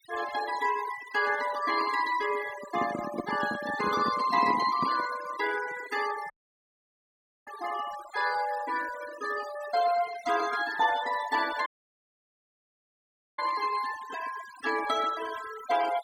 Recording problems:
denoising artefacts; signal-to-artefact ratio 12 dB
handling noise; from 2.5 to 5 s; peak 0 dB vs average level
audio cutting out; at 6.5 s for 1 s and at 12 s for 1.5 s

